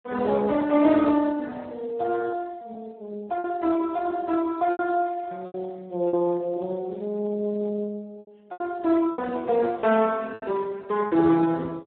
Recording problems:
phone line; 220 Hz to 2.1 kHz, Speex
packet loss; 6% of the sound replaced, filled with repeated pitch periods

